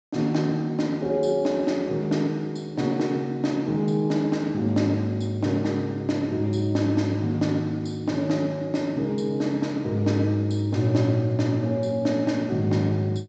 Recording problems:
treble missing; nothing above 8 kHz

